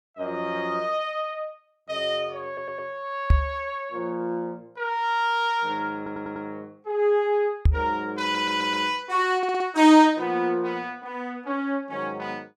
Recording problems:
audio stuttering; 4 times, first at 2.5 s
microphone thump; at 3.5 s and at 7.5 s; peak +9 dB vs average level

